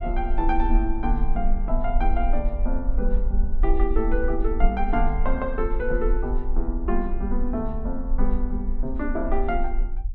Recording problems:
low-frequency rumble; below 40 Hz, strongest tone 20 Hz, SNR 0 dB

